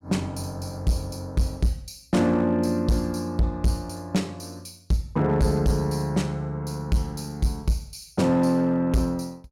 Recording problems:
distortion; hard clipping, signal-to-distortion ratio 10 dB

